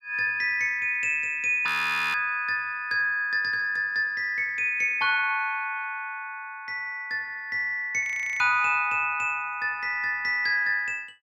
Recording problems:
audio freezing; at 1.5 s and at 8 s

